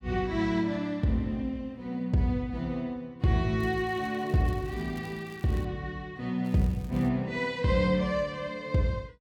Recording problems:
crackle; from 3.5 to 5.5 s and at 6.5 s; loose cable, SNR 26 dB

